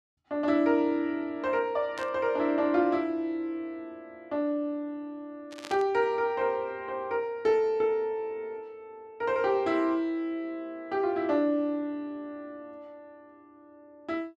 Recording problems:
burst of static; at 2 s and at 5.5 s; peak -8 dB vs average level

